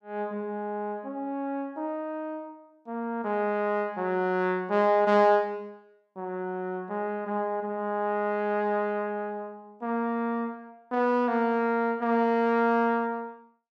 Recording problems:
none

